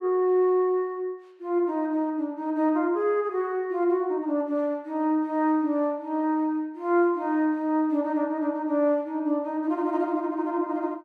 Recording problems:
none

